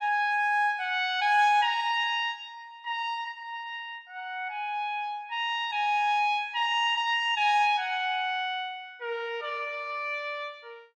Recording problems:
none

